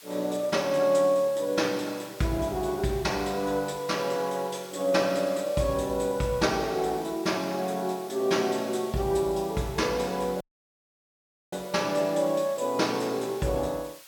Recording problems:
background hiss; slope +2 dB per octave, SNR 20 dB
audio cutting out; at 10 s for 1 s

